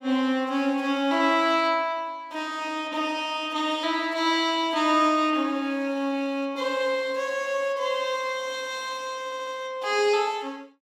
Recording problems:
audio stuttering; at 9.5 s

